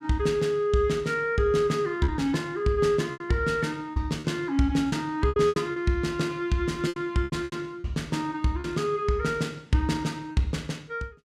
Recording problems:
lost packets; 7% of the sound replaced, filled with repeated pitch periods

